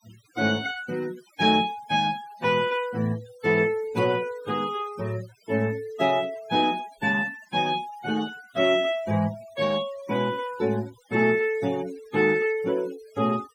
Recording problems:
noise reduction artefacts; signal-to-artefact ratio 21 dB

